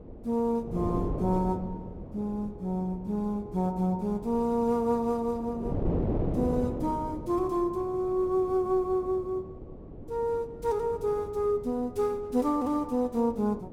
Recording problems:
wind on the microphone; below 400 Hz, SNR 9 dB

